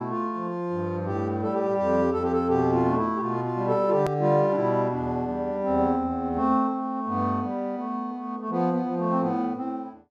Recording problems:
edit click; at 4 s

